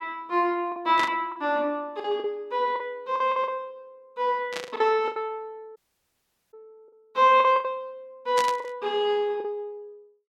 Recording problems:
packet loss; 8% of the sound replaced, filled with the last packet
burst of static; at 1 s, at 4.5 s and at 8.5 s; peak -1 dB vs average level
audio cutting out; at 6 s for 1 s

